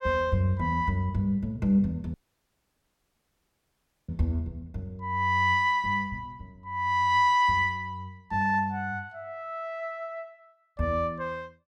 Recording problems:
audio cutting out; at 2 s for 2 s

